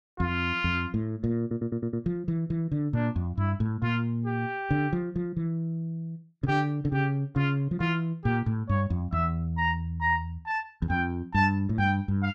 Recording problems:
audio stuttering; at 1.5 s

